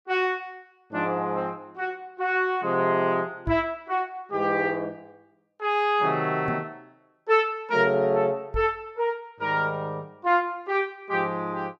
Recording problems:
microphone bump; at 3.5 s, at 6.5 s and at 8.5 s; peak -1 dB vs average level

